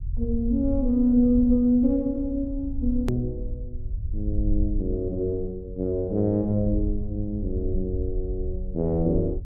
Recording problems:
low-frequency rumble; below 66 Hz, SNR 8 dB
click at an edit; at 3 s

